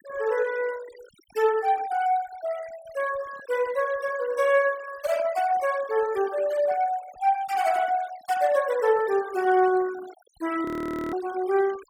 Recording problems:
noise reduction artefacts; signal-to-artefact ratio 19 dB
audio freezing; at 11 s

